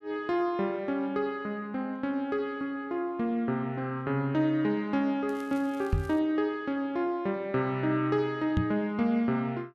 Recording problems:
crackle; at 5.5 s; loose cable, SNR 26 dB
microphone thump; at 6 s and at 8.5 s; peak +6 dB vs average level

